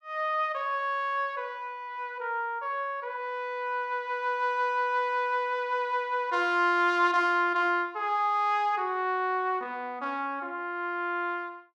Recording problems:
none

